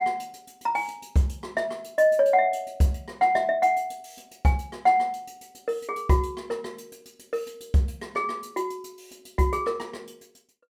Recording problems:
none

